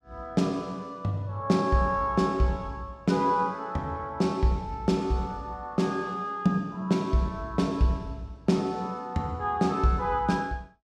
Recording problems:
none

